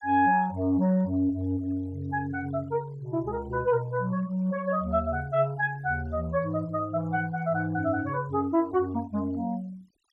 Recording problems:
denoising artefacts; signal-to-artefact ratio 27 dB

